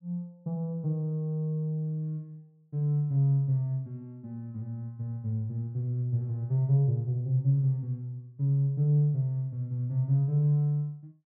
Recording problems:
none

